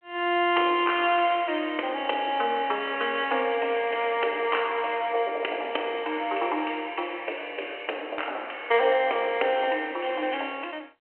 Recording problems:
phone line; 280 Hz to 3.2 kHz, G.726

